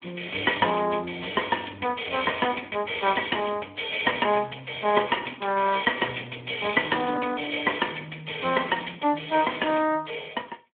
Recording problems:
phone line; 240 Hz to 3.4 kHz, Speex

